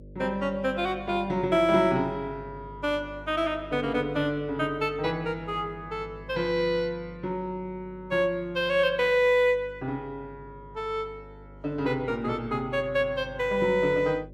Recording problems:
hum; 50 Hz, harmonics up to 600 Hz, SNR 20 dB

